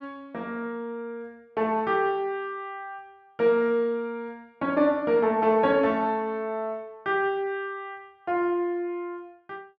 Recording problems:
none

